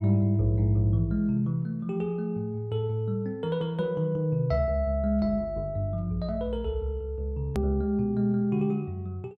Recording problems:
edit click; at 7.5 s

